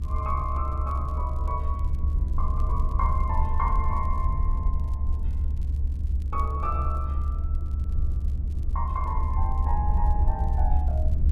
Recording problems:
hum; 50 Hz, harmonics up to 300 Hz, SNR 16 dB
low-frequency rumble; below 72 Hz, SNR -6 dB
crackle; vinyl, SNR 30 dB

